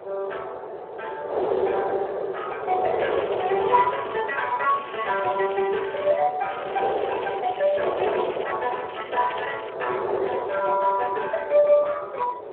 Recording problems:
telephone audio; 320 Hz to 3.2 kHz, Speex
wind on the microphone; below 670 Hz, SNR 5 dB
crackling; 4 times, first at 3 s; loose cable, SNR 15 dB

